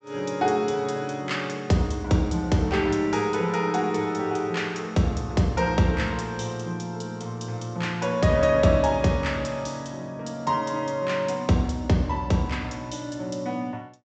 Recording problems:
treble missing; nothing above 8 kHz

